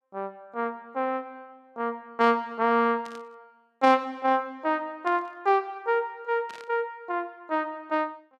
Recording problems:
burst of static; at 3 s, at 5 s and at 6.5 s; peak -14 dB vs average level

